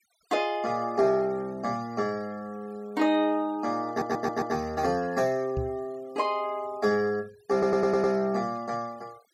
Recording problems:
noise reduction artefacts; signal-to-artefact ratio 25 dB
stutter; at 4 s and at 7.5 s
microphone thump; at 5.5 s; peak -1 dB vs average level

